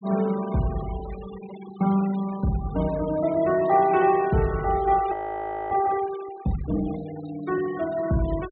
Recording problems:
treble missing; nothing above 4 kHz
denoising artefacts; signal-to-artefact ratio 18 dB
frozen audio; at 5 s for 0.5 s

